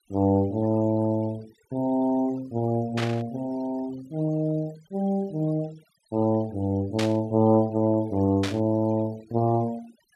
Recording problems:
noise reduction artefacts; signal-to-artefact ratio 24 dB
burst of static; at 3 s, at 7 s and at 8.5 s; peak -1 dB vs average level

